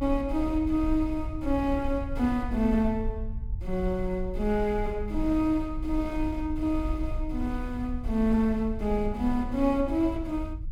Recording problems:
low-frequency rumble; below 64 Hz, strongest tone 28 Hz, SNR 8 dB

